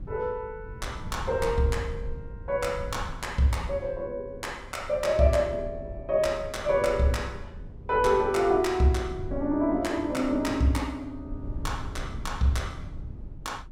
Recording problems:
wind noise; below 110 Hz, SNR 13 dB

